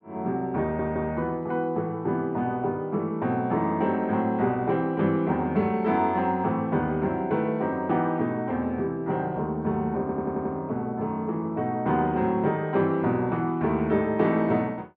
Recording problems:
audio stuttering; at 0.5 s and at 10 s

